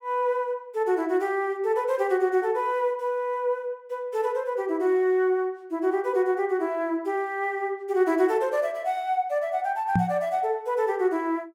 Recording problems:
microphone bump; at 10 s; peak +5 dB vs average level

